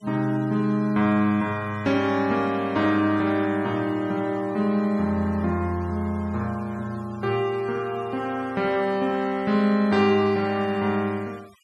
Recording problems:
denoising artefacts; signal-to-artefact ratio 25 dB

